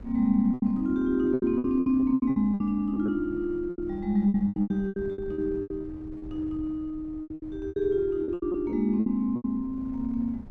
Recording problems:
wind on the microphone; below 180 Hz, SNR 18 dB
lost packets; 16% of the sound replaced, filled with repeated pitch periods

